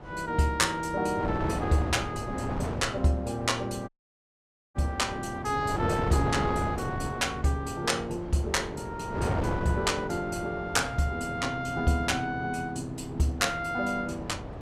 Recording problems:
wind noise; below 620 Hz, SNR 7 dB
audio cutting out; at 4 s for 1 s

